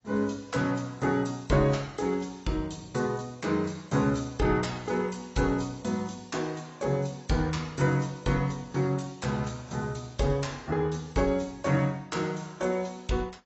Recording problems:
lossy codec; AAC, log-spectral distance 5 dB, nothing above 7.8 kHz

